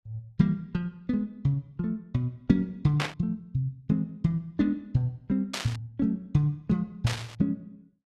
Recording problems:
static burst; at 3 s, at 5.5 s and at 7 s; peak +3 dB vs average level

